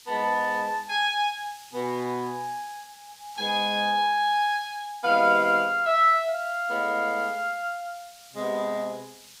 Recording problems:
background hiss; slope +4 dB per octave, SNR 22 dB

